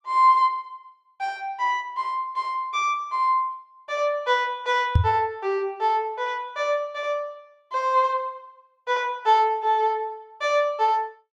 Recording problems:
microphone thump; at 5 s; peak +9 dB vs average level

